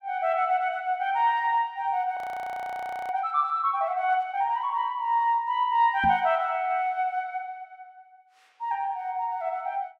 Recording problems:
audio freezing; at 2 s for 1 s
knock on the microphone; at 6 s; peak -4 dB vs average level

